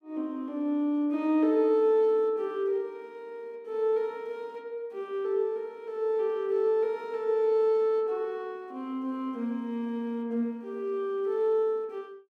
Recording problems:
none

